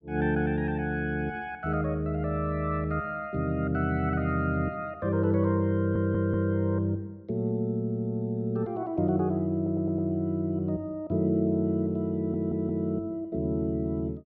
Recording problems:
treble missing; nothing above 6.5 kHz
audio stuttering; at 6 s, at 9.5 s and at 12 s

